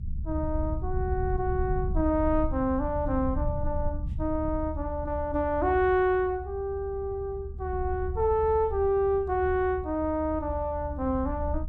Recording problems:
rumble; below 76 Hz, SNR 7 dB

